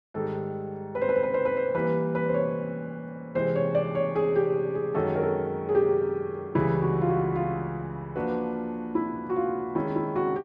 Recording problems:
none

